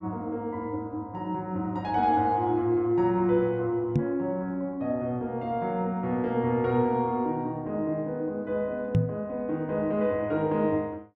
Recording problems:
microphone thump; at 4 s and at 9 s; peak +8 dB vs average level

